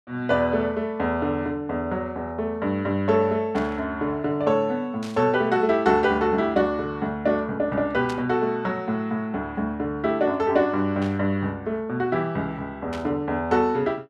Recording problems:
static burst; 5 times, first at 3.5 s; peak -9 dB vs average level

